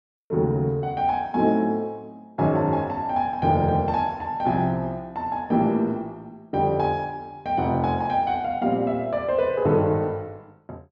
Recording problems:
none

